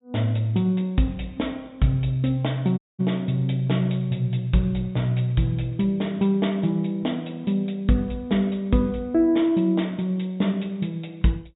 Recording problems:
treble cut off; nothing above 4 kHz
dropout; at 3 s

